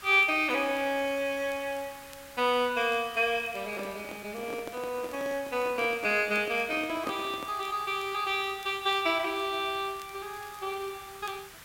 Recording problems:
background hiss; SNR 18 dB
crackle; vinyl, SNR 29 dB
microphone handling noise; from 3.5 to 7.5 s; peak -3 dB vs average level

